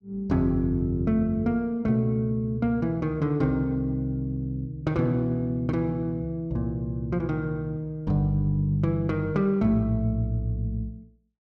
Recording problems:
none

